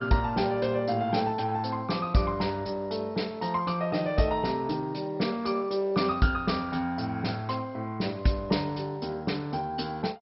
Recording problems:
codec artefacts; MP2, log-spectral distance 4 dB, nothing above 5.5 kHz

